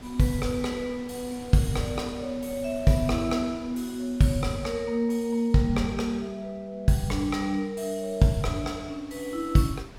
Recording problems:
wind noise; below 1.1 kHz, SNR 22 dB

